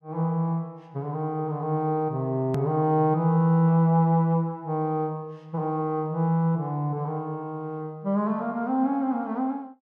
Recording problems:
hard cut with a click; at 2.5 s

